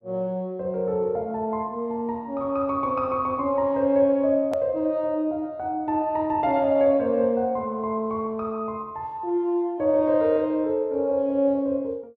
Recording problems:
edit click; at 4.5 s

